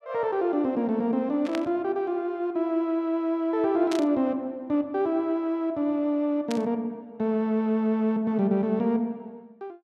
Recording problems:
burst of static; at 1.5 s, at 4 s and at 6.5 s; peak -4 dB vs average level

